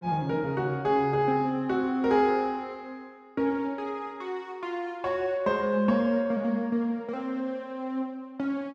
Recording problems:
none

